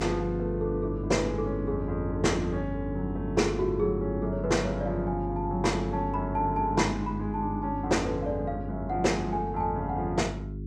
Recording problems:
hum; 50 Hz, harmonics up to 400 Hz, SNR 6 dB

